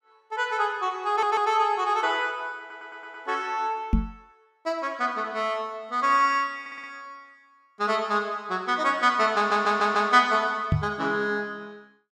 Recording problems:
audio stuttering; 4 times, first at 1 s
knock on the microphone; at 4 s and at 11 s; peak +6 dB vs average level

